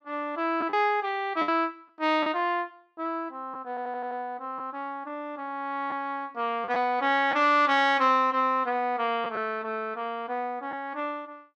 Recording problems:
lost packets; 2% of the sound replaced, filled with the last packet
stutter; at 3.5 s

